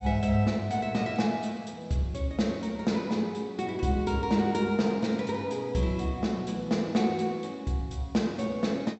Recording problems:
treble missing; nothing above 8 kHz

